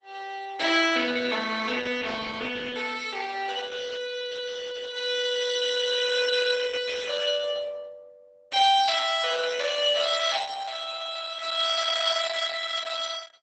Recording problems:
codec artefacts; Opus, log-spectral distance 6 dB, nothing above 8 kHz

